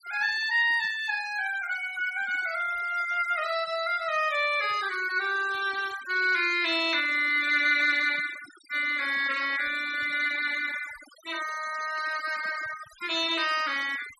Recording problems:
denoising artefacts; signal-to-artefact ratio 17 dB

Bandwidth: 12.5 kHz